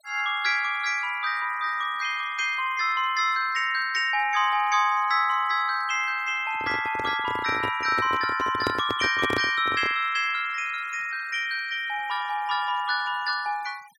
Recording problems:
denoising artefacts; signal-to-artefact ratio 24 dB
handling noise; from 6.5 to 10 s; peak 0 dB vs average level

